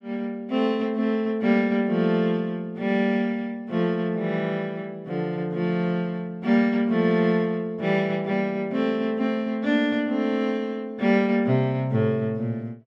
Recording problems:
none

